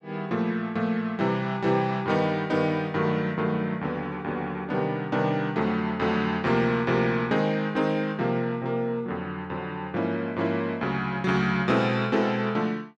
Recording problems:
none

